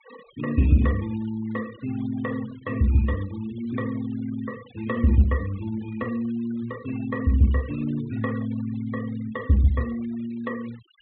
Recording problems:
low-pass filter; nothing above 4 kHz
denoising artefacts; signal-to-artefact ratio 22 dB

